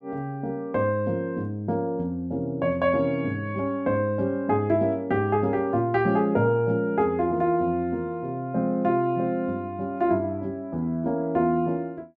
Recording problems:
none

